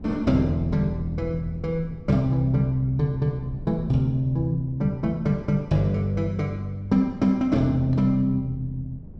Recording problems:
wind noise; below 190 Hz, SNR 18 dB

